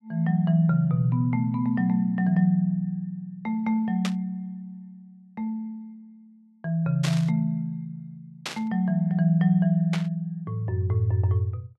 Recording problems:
static burst; 4 times, first at 4 s; peak -2 dB vs average level

